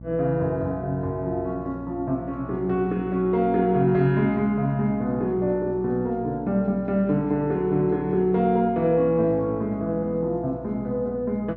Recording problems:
low-pass filter; nothing above 6.5 kHz
electrical hum; 60 Hz, harmonics up to 600 Hz, SNR 18 dB

